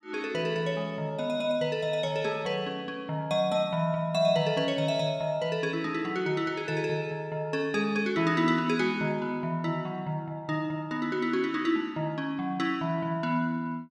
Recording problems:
none

